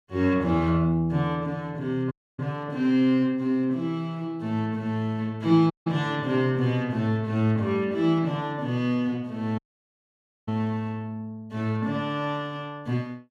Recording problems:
audio cutting out; at 2 s, at 5.5 s and at 9.5 s for 1 s

